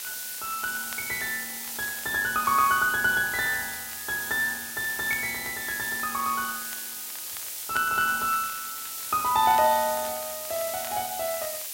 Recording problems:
background hiss; SNR 6 dB
crackling; vinyl, SNR 21 dB

